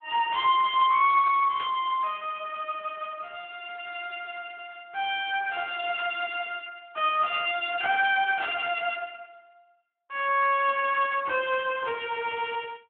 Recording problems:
phone line; 340 Hz to 3.4 kHz, Speex
static burst; at 1.5 s and at 6 s; peak -8 dB vs average level

